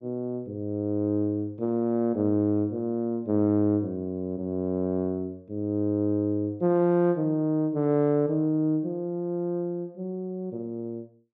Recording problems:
none

